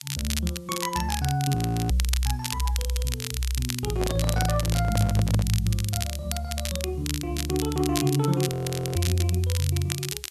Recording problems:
background hiss; slope +3 dB per octave, SNR 27 dB
crackling; vinyl, SNR 6 dB
frozen audio; at 1.5 s and at 8.5 s
handling noise; from 4 to 5.5 s; peak -2 dB vs average level

